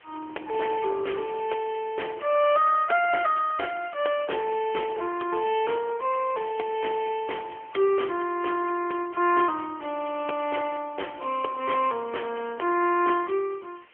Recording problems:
phone line; 300 Hz to 3.1 kHz, AMR-NB
background hiss; SNR 27 dB

